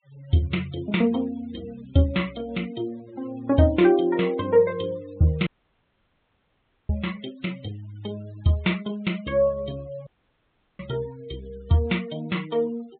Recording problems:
treble missing; nothing above 4 kHz
denoising artefacts; signal-to-artefact ratio 23 dB
audio cutting out; at 5.5 s for 1.5 s and at 10 s for 0.5 s

